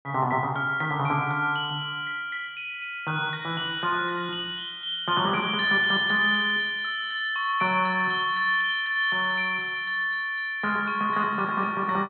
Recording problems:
treble missing; nothing above 4 kHz

